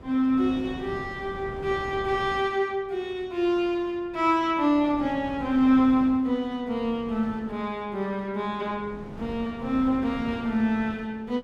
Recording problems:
wind on the microphone; below 490 Hz, SNR 16 dB

